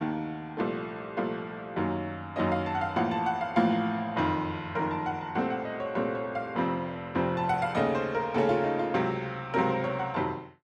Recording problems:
none

